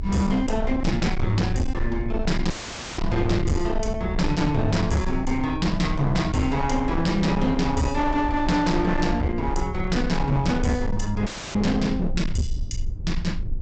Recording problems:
treble cut off; nothing above 8 kHz
distorted audio; hard clipping, uneven, signal-to-distortion ratio 8 dB
low-frequency rumble; below 86 Hz, strongest tone 20 Hz, SNR 7 dB
dropout; at 2.5 s and at 11 s; filled with static

